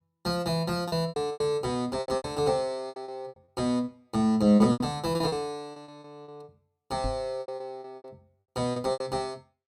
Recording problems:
lost packets; 17% of the sound replaced, filled with repeated pitch periods
knock on the microphone; at 7 s; peak -2 dB vs average level

